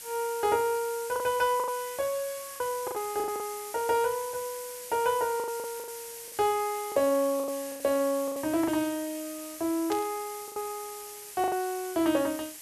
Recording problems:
hiss; slope +1 dB per octave, SNR 11 dB
packet loss; 9% of the sound replaced, filled with the last packet
static burst; at 10 s; peak -5 dB vs average level

